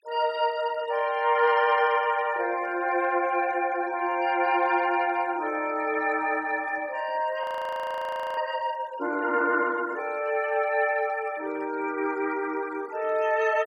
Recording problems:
noise reduction artefacts; signal-to-artefact ratio 22 dB
audio freezing; at 7.5 s for 1 s

